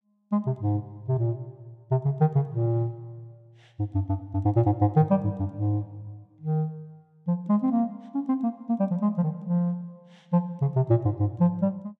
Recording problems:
none

